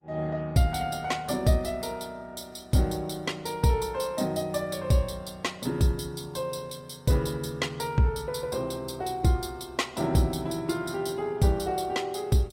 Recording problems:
lossy codec; Opus, log-spectral distance 4 dB, nothing above 16 kHz

